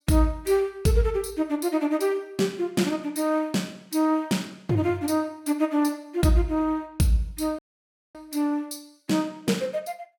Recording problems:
dropout; at 7.5 s for 0.5 s

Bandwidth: 17 kHz